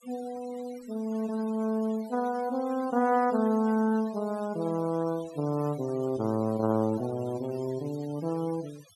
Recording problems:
denoising artefacts; signal-to-artefact ratio 21 dB

